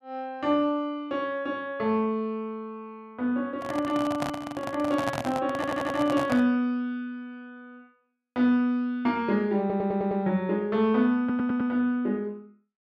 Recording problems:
handling noise; from 3.5 to 6.5 s; peak 0 dB vs average level
stutter; at 5.5 s, at 9.5 s and at 11 s

